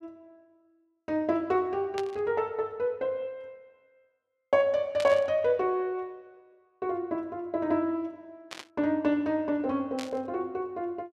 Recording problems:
static burst; 4 times, first at 2 s; peak -4 dB vs average level

